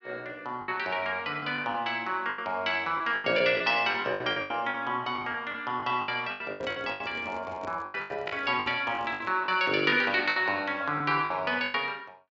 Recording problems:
treble missing; nothing above 8 kHz
packet loss; 14% of the sound replaced, filled with the last packet
handling noise; from 6.5 to 9.5 s; peak -9 dB vs average level

